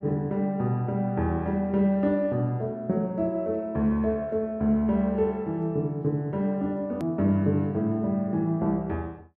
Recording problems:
hard cut with a click; at 7 s

